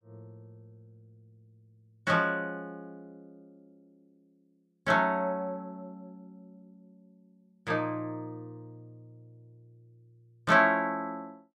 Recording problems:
none

